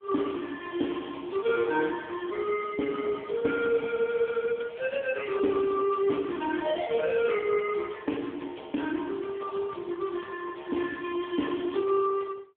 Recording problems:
telephone audio; 130 Hz to 3.4 kHz, AMR-NB

